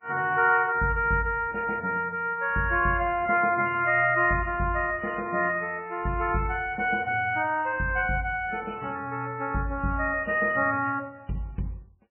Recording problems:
codec artefacts; MP3, log-spectral distance 3 dB, nothing above 3 kHz

